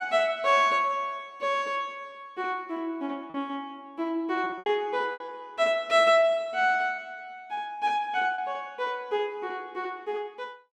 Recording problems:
packet loss; 4% of the sound replaced, filled with repeated pitch periods

